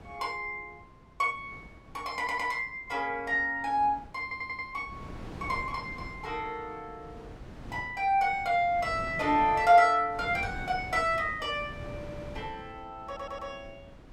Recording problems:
wind noise; below 440 Hz, SNR 17 dB
stutter; 4 times, first at 2 s

